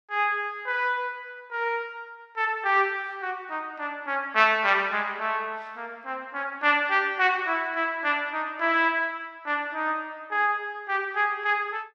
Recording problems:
none

